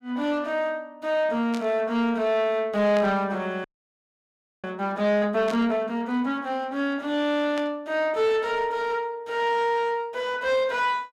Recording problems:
distortion; soft clipping, signal-to-distortion ratio 11 dB
burst of static; 4 times, first at 1.5 s; peak -8 dB vs average level
audio freezing; at 3.5 s for 1 s

